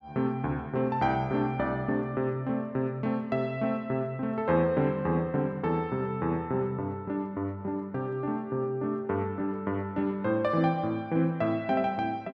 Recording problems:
none

